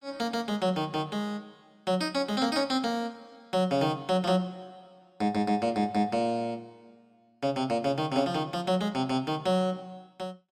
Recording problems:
none

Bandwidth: 16 kHz